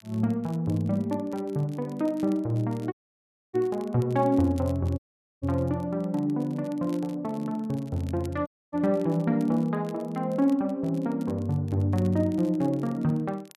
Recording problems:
crackling; vinyl, SNR 28 dB
audio cutting out; at 3 s for 0.5 s, at 5 s and at 8.5 s

